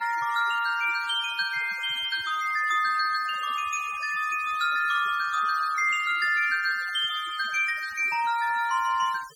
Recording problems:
noise reduction artefacts; signal-to-artefact ratio 19 dB

